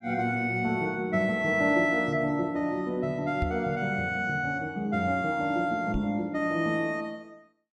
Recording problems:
knock on the microphone; at 3.5 s and at 6 s; peak 0 dB vs average level

